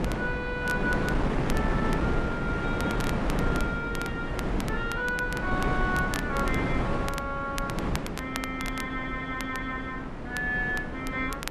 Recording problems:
codec artefacts; AAC, log-spectral distance 2 dB
wind on the microphone; below 510 Hz, SNR -1 dB
crackle; vinyl, SNR 10 dB

